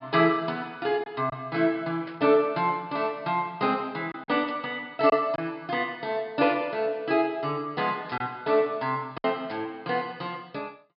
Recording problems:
low-pass filter; nothing above 5.5 kHz
packet loss; 2% of the sound replaced, filled with silence
static burst; 4 times, first at 2 s; peak -14 dB vs average level

